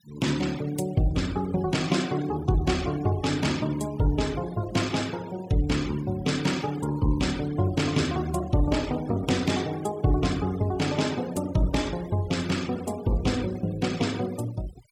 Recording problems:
denoising artefacts; signal-to-artefact ratio 17 dB

